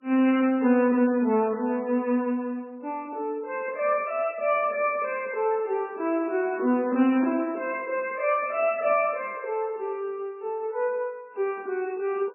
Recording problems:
lossy compression; MP3, log-spectral distance 2 dB, nothing above 2.4 kHz

